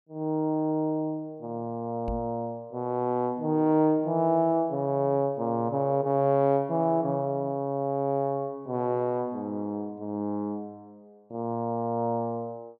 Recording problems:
microphone bump; at 2 s; peak -2 dB vs average level

